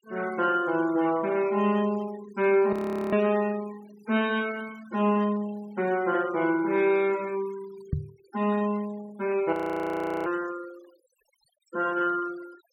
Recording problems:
denoising artefacts; signal-to-artefact ratio 21 dB
audio freezing; at 2.5 s and at 9.5 s for 0.5 s
microphone bump; at 8 s; peak +2 dB vs average level

